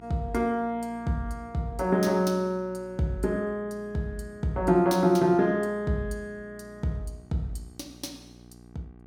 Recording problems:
hum; 60 Hz, harmonics up to 1.2 kHz, SNR 23 dB

